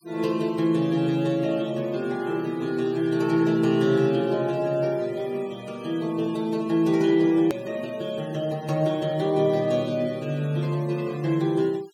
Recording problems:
denoising artefacts; signal-to-artefact ratio 24 dB
hard cut with a click; at 7.5 s

